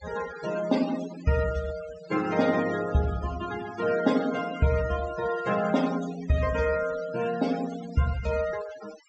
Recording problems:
treble missing; nothing above 8 kHz
denoising artefacts; signal-to-artefact ratio 13 dB

